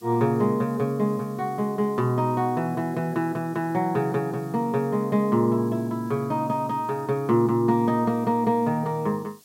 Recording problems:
hiss; SNR 28 dB

